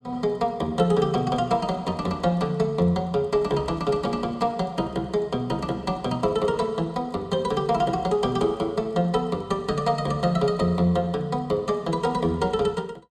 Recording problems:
none

